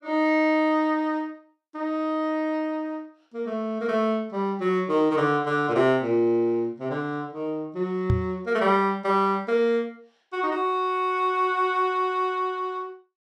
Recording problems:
knock on the microphone; at 8 s; peak +5 dB vs average level

